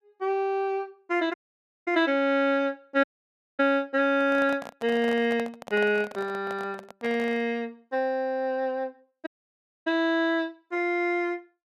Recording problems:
dropout; at 1.5 s for 0.5 s, at 3 s for 0.5 s and at 9.5 s for 0.5 s
microphone handling noise; from 4 to 7.5 s; peak -6 dB vs average level

